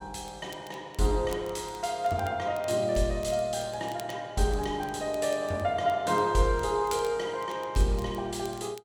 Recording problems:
crackle; vinyl, SNR 23 dB

